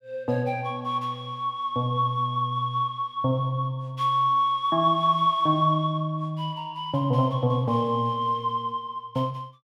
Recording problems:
none

